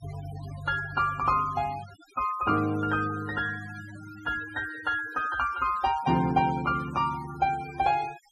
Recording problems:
noise reduction artefacts; signal-to-artefact ratio 17 dB

